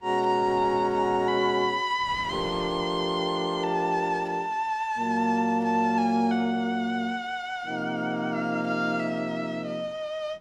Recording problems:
wind on the microphone; below 1.1 kHz, SNR 21 dB

